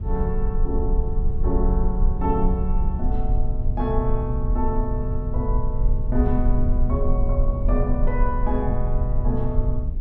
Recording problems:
low-frequency rumble; below 56 Hz, SNR -2 dB

